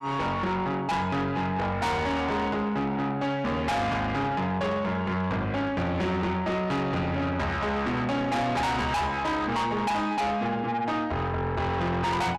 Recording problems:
distortion; soft clipping, signal-to-distortion ratio 6 dB

